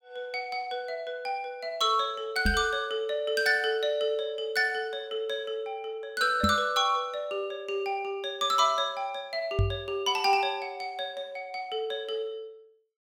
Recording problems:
microphone thump; at 2.5 s, at 6.5 s and at 9.5 s; peak +5 dB vs average level

